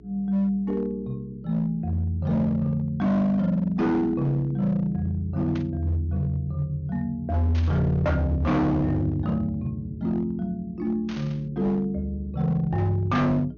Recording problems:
treble cut off; nothing above 6.8 kHz
distortion; hard clipping, signal-to-distortion ratio 8 dB
hum; 60 Hz, harmonics up to 420 Hz, SNR 21 dB
burst of static; at 5.5 s, at 7.5 s and at 11 s; peak -11 dB vs average level

